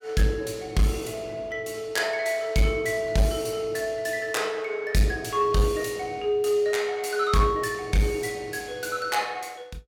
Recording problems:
distorted audio; soft clipping, signal-to-distortion ratio 12 dB

